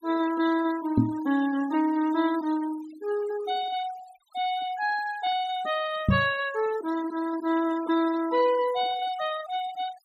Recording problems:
noise reduction artefacts; signal-to-artefact ratio 15 dB
microphone thump; at 1 s and at 6 s; peak +9 dB vs average level

